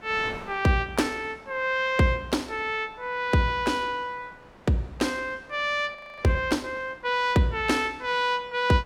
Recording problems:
wind on the microphone; below 1.3 kHz, SNR 23 dB
frozen audio; at 6 s

